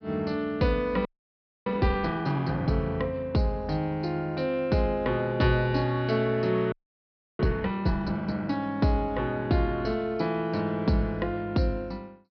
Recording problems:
treble missing; nothing above 5.5 kHz
frozen audio; at 1 s for 0.5 s and at 6.5 s for 0.5 s

